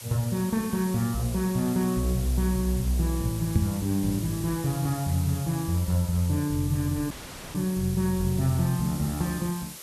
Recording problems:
hiss; slope -1 dB per octave, SNR 13 dB
microphone bump; at 3.5 s; peak +7 dB vs average level
dropout; at 7 s

